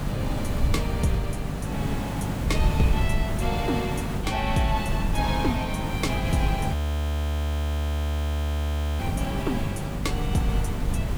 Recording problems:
hum; 50 Hz, harmonics up to 750 Hz, SNR 5 dB
background hiss; slope -6 dB per octave, SNR 2 dB
low-frequency rumble; below 76 Hz, SNR 2 dB
crackling; from 2.5 to 4 s; loose cable, SNR 28 dB
audio freezing; at 6.5 s for 2.5 s

